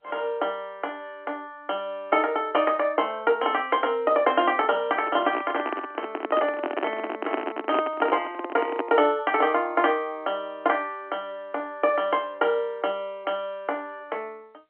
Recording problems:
telephone audio; 240 Hz to 3.2 kHz, G.711
handling noise; from 5 to 9 s; peak +3 dB vs average level

